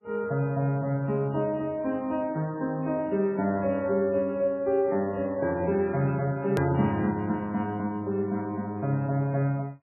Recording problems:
lossy compression; MP3, log-spectral distance 2 dB, nothing above 13.1 kHz
click at an edit; at 6.5 s

